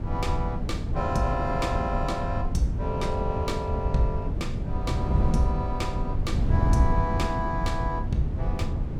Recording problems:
wind on the microphone; below 130 Hz, SNR -1 dB

